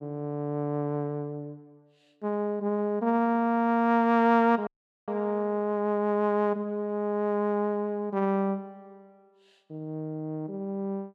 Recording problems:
dropout; at 4.5 s

